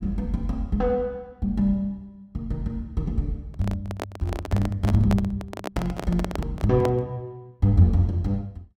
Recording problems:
microphone handling noise; from 3.5 to 7 s; peak 0 dB vs average level

